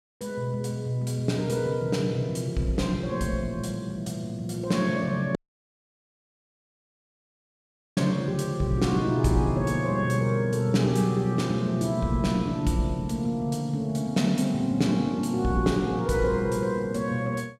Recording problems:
audio cutting out; at 5.5 s for 2.5 s

